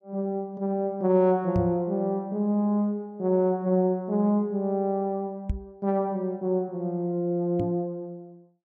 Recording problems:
microphone thump; at 1.5 s, at 5.5 s and at 7.5 s; peak +1 dB vs average level

